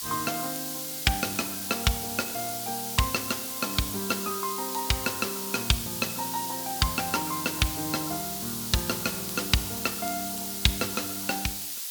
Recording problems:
hiss; slope +5 dB per octave, SNR 2 dB
crackle; vinyl, SNR 23 dB

